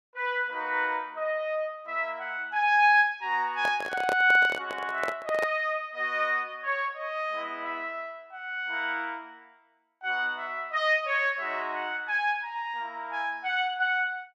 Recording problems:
microphone handling noise; from 3.5 to 5.5 s; peak 0 dB vs average level

